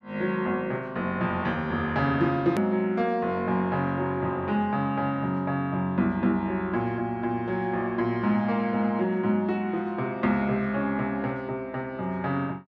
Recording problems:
click at an edit; at 2.5 s

